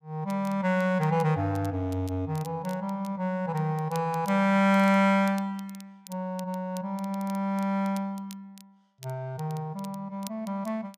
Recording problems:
crackling; vinyl, SNR 23 dB

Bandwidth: 15 kHz